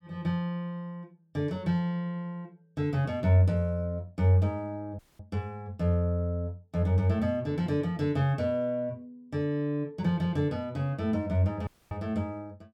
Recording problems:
dropout; at 5 s and at 12 s

